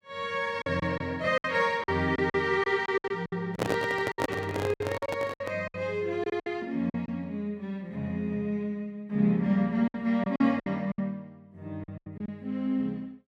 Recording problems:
lost packets; 10% of the sound replaced, filled with silence
handling noise; from 3.5 to 5.5 s; peak +5 dB vs average level

